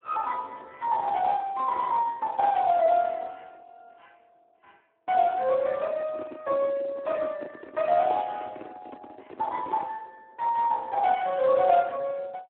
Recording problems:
telephone audio; 150 Hz to 2.8 kHz, Speex
handling noise; from 6 to 10 s; peak -9 dB vs average level

